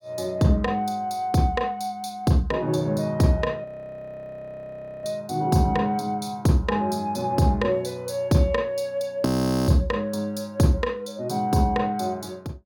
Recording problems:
frozen audio; at 3.5 s for 1.5 s and at 9.5 s

